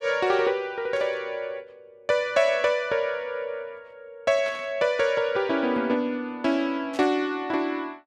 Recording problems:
burst of static; at 1 s, at 4.5 s and at 7 s; peak -12 dB vs average level

